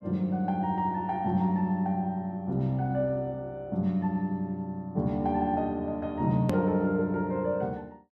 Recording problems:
edit click; at 6.5 s

